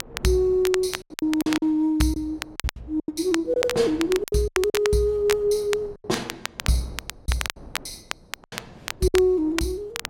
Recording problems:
wind on the microphone; below 510 Hz, SNR 24 dB
crackle; vinyl, SNR 10 dB
lost packets; 13% of the sound replaced, filled with silence

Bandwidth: 16 kHz